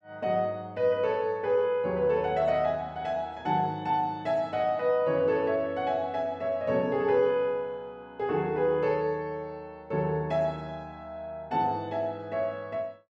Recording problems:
none

